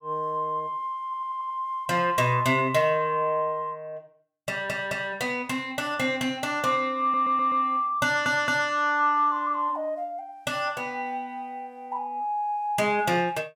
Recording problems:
audio stuttering; 4 times, first at 1 s

